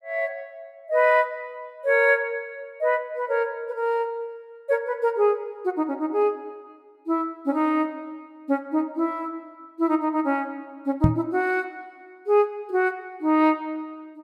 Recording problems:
knock on the microphone; at 11 s; peak +9 dB vs average level

